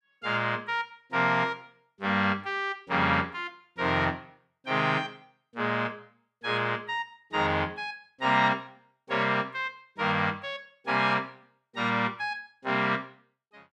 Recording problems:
none

